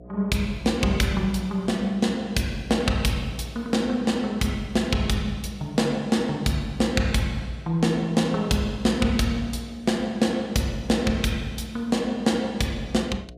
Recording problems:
hum; 60 Hz, harmonics up to 720 Hz, SNR 22 dB

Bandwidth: 15.5 kHz